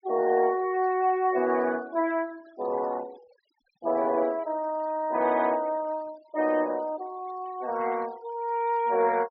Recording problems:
treble cut off; nothing above 5.5 kHz
denoising artefacts; signal-to-artefact ratio 24 dB

